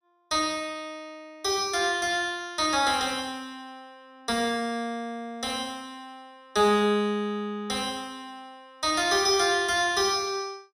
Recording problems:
none

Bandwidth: 15.5 kHz